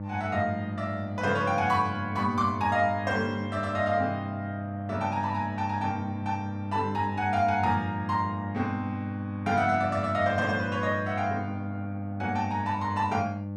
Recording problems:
hum; 50 Hz, harmonics up to 900 Hz, SNR 6 dB

